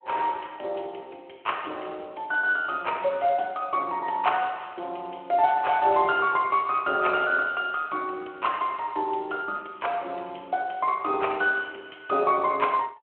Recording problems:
phone line; 320 Hz to 3.6 kHz, Speex

